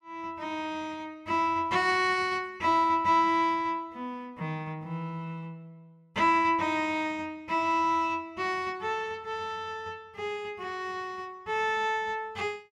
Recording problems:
none

